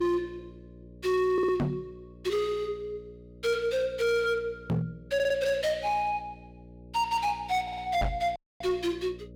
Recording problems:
distorted audio; hard clipping, signal-to-distortion ratio 7 dB
hum; 60 Hz, harmonics up to 600 Hz, SNR 20 dB
audio stuttering; at 1.5 s, at 5 s and at 7.5 s
knock on the microphone; at 1.5 s, at 4.5 s and at 8 s; peak +4 dB vs average level
audio cutting out; at 8.5 s

